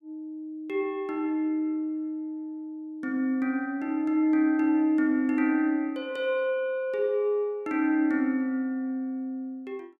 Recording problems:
none

